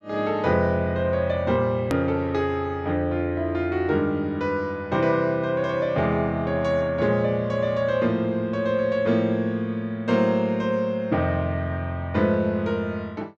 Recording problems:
click at an edit; at 2 s

